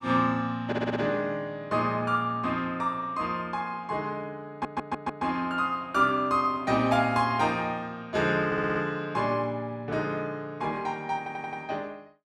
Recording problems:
stutter; 4 times, first at 0.5 s

